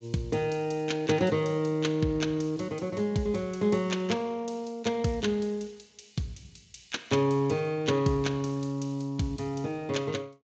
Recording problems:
lossy codec; Speex, log-spectral distance 4 dB, nothing above 7.3 kHz

